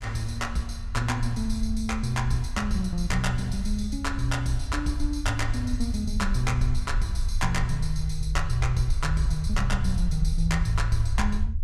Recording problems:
rumble; below 66 Hz, SNR 2 dB

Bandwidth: 14.5 kHz